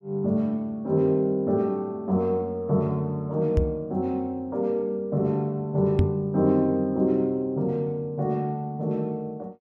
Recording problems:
microphone thump; at 3.5 s and at 6 s; peak +7 dB vs average level

